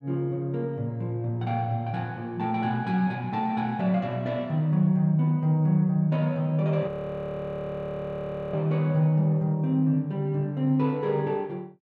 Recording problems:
frozen audio; at 7 s for 1.5 s

